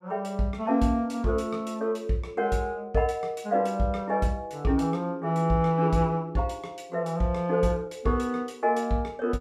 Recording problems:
none

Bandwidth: 14.5 kHz